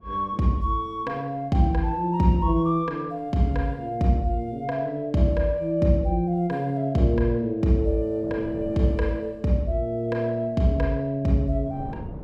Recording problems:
wind on the microphone; below 290 Hz, SNR 19 dB

